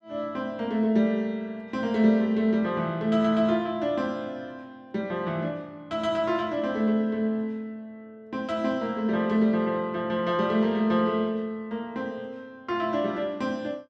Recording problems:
none

